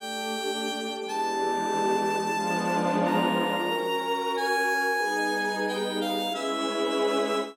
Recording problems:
none

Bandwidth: 16.5 kHz